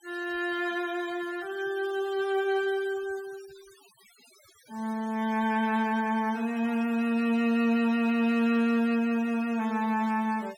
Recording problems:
noise reduction artefacts; signal-to-artefact ratio 22 dB

